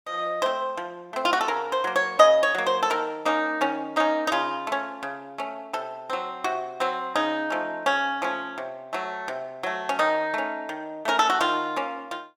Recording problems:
none

